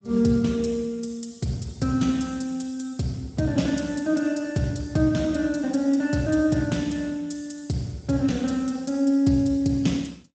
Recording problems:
codec artefacts; Speex, log-spectral distance 5 dB, nothing above 8 kHz

